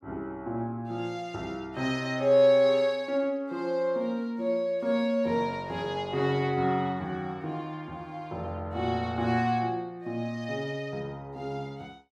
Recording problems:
none

